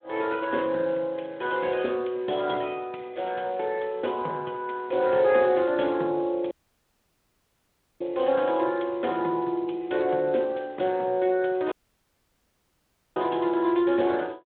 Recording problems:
phone line; 240 Hz to 3.7 kHz, Speex
dropout; at 6.5 s for 1.5 s and at 12 s for 1.5 s

